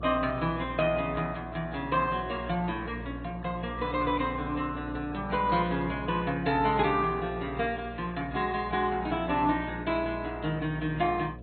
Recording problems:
lossy codec; AAC, then MP2, log-spectral distance 3 dB, nothing above 4.1 kHz
hum; 60 Hz, harmonics up to 720 Hz, SNR 12 dB

